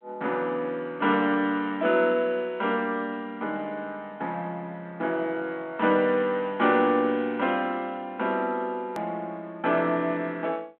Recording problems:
telephone audio; 190 Hz to 3.6 kHz, G.726
click at an edit; at 9 s

